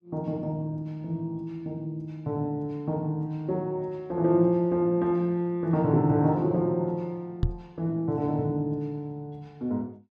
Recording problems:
microphone thump; at 7.5 s; peak +6 dB vs average level

